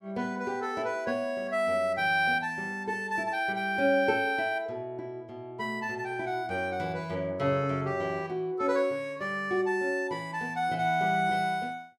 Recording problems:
none

